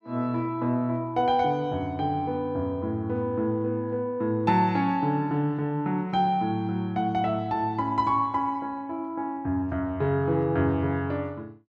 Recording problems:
none

